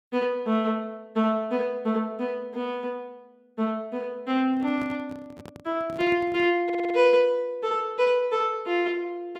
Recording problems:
microphone handling noise; from 4.5 to 6.5 s; peak -10 dB vs average level
audio stuttering; at 6.5 s

